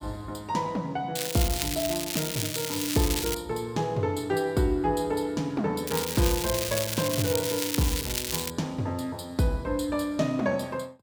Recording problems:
crackle; from 1 to 3.5 s and from 6 to 8.5 s; loose cable, SNR 2 dB

